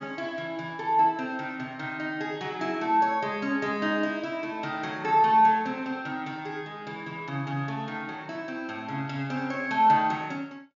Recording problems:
treble cut off; nothing above 6.9 kHz

